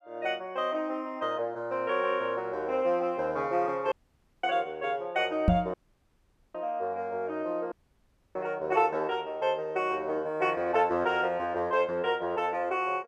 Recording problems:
audio cutting out; at 4 s for 0.5 s, at 5.5 s for 1 s and at 7.5 s for 0.5 s
microphone thump; at 5.5 s and at 8.5 s; peak +9 dB vs average level

